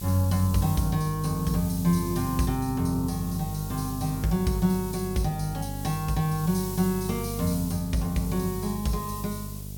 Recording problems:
mains hum; 50 Hz, harmonics up to 450 Hz, SNR 8 dB
hiss; SNR 13 dB

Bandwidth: 17 kHz